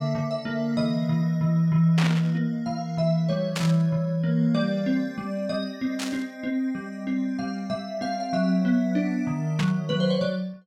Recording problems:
burst of static; 4 times, first at 2 s; peak 0 dB vs average level

